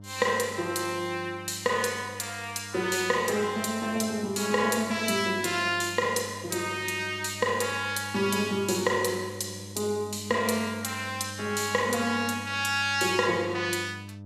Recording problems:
electrical hum; 50 Hz, harmonics up to 900 Hz, SNR 16 dB

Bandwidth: 15.5 kHz